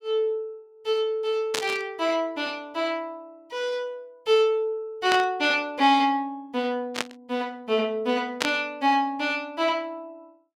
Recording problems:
burst of static; 4 times, first at 1.5 s; peak +5 dB vs average level

